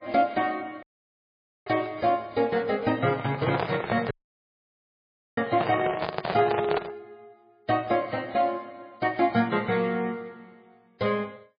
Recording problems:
lossy codec; MP3, log-spectral distance 4 dB
audio cutting out; at 1 s for 1 s and at 4 s for 1.5 s
crackle; at 1.5 s; loose cable, SNR 26 dB
microphone handling noise; from 3 to 7 s; peak +2 dB vs average level

